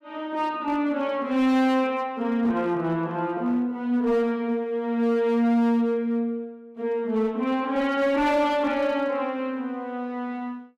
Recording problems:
distorted audio; hard clipping, uneven, signal-to-distortion ratio 12 dB

